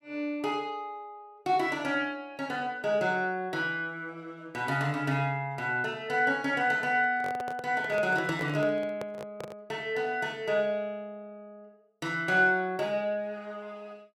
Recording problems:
handling noise; from 7 to 9.5 s; peak -5 dB vs average level

